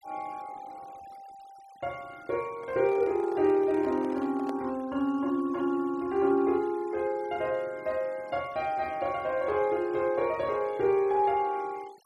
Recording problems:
noise reduction artefacts; signal-to-artefact ratio 26 dB
handling noise; from 2.5 to 4.5 s; peak -9 dB vs average level

